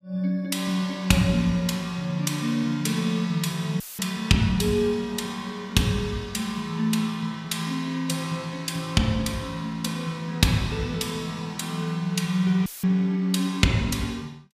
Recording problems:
audio cutting out; at 4 s and at 13 s; filled with static

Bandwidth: 15 kHz